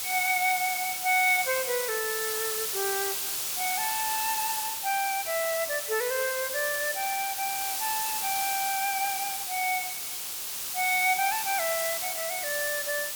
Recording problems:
hiss; slope +2 dB per octave, SNR 1 dB

